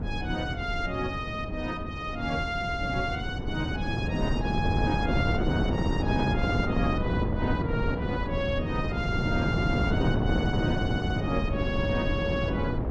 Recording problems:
low-frequency rumble; below 80 Hz, SNR 8 dB
wind on the microphone; below 340 Hz, SNR -2 dB

